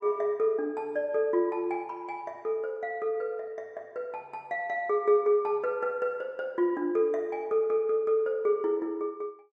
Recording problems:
none

